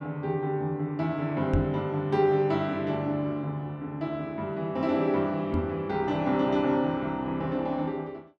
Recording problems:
microphone bump; at 1.5 s and at 5.5 s; peak +5 dB vs average level

